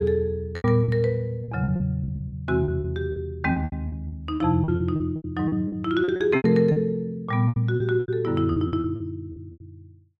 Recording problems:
packet loss; 17% of the sound replaced, filled with repeated pitch periods

